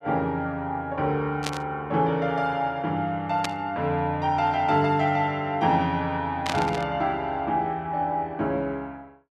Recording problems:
static burst; at 1.5 s, at 3.5 s and at 6.5 s; peak +1 dB vs average level

